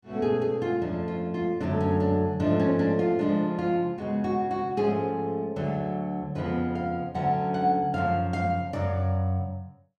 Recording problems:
none

